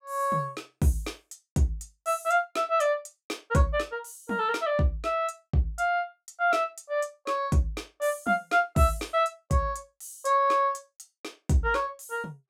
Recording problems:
none

